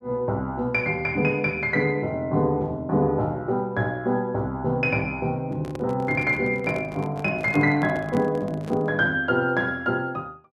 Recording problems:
microphone handling noise; from 5.5 to 9 s; peak -5 dB vs average level

